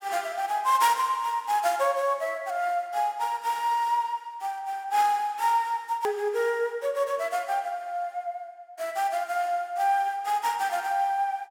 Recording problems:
hard cut with a click; at 6 s

